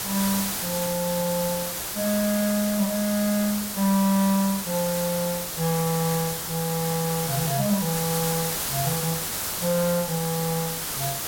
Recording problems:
background hiss; slope -1 dB per octave, SNR 2 dB

